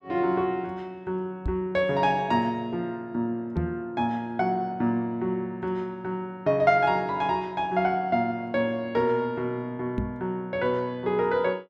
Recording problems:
microphone bump; at 1.5 s, at 3.5 s and at 10 s; peak +1 dB vs average level

